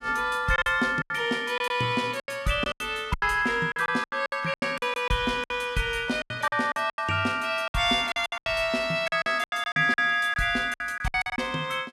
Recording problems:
lost packets; 15% of the sound replaced, filled with silence

